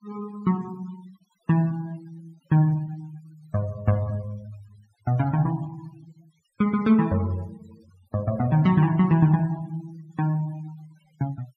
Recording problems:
noise reduction artefacts; signal-to-artefact ratio 25 dB

